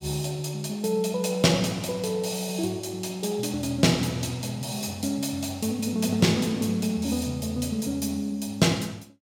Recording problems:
none

